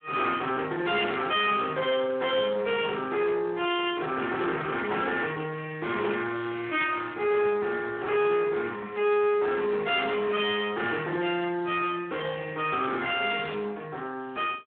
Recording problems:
phone line; 240 Hz to 3.4 kHz, Speex
distortion; soft clipping, signal-to-distortion ratio 11 dB

